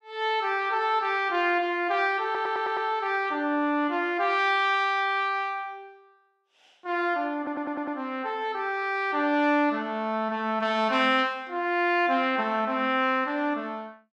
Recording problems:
stutter; at 2 s and at 7.5 s

